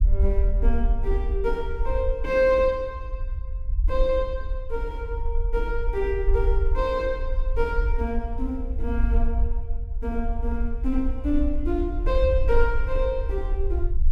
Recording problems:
rumble; below 54 Hz, SNR 1 dB

